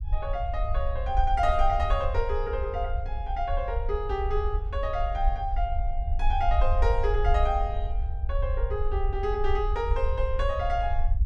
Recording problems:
low-frequency rumble; below 60 Hz, SNR 1 dB

